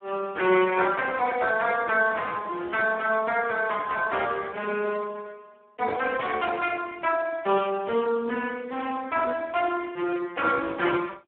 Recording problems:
phone line; 260 Hz to 3.3 kHz, Speex

